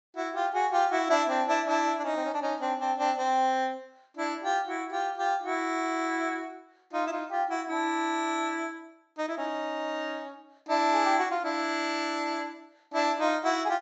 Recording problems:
treble missing; nothing above 8 kHz

